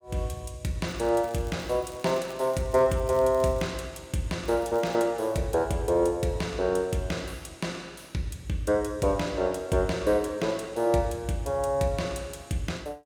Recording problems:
crackle; from 1 to 3.5 s and at 4.5 s; loose cable, SNR 25 dB

